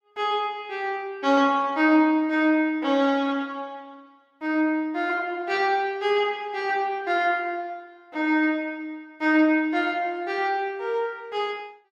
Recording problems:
none

